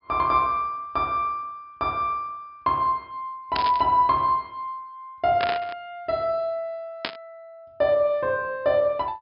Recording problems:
treble cut off; nothing above 5.5 kHz
static burst; at 3.5 s, at 5.5 s and at 7 s; peak +1 dB vs average level

